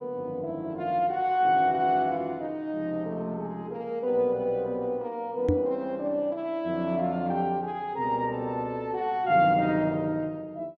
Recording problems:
knock on the microphone; at 5.5 s; peak +5 dB vs average level

